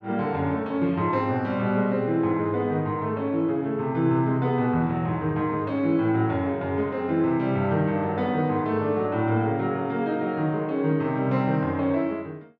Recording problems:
none

